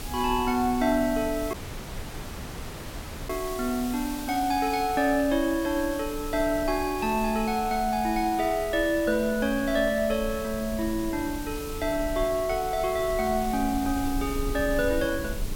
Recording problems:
background hiss; slope -1 dB per octave, SNR 14 dB
rumble; below 92 Hz, strongest tone 30 Hz, SNR 14 dB
dropout; at 1.5 s for 2 s

